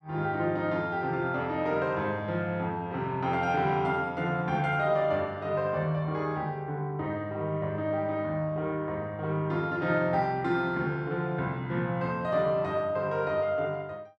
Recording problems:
none

